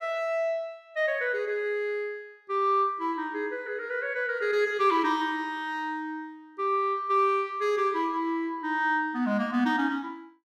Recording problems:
none

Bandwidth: 14.5 kHz